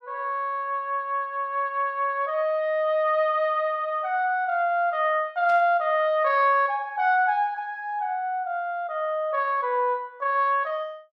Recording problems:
burst of static; at 5.5 s; peak -16 dB vs average level

